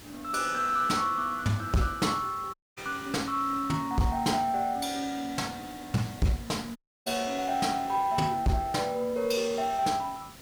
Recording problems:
distortion; soft clipping, signal-to-distortion ratio 8 dB
background hiss; slope -3 dB per octave, SNR 18 dB
audio cutting out; at 2.5 s and at 7 s

